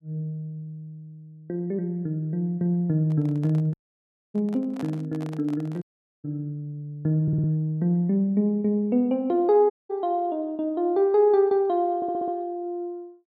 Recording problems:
handling noise; from 3 to 6 s; peak -10 dB vs average level
audio cutting out; at 3.5 s for 0.5 s, at 6 s and at 9.5 s
stutter; at 7 s and at 12 s

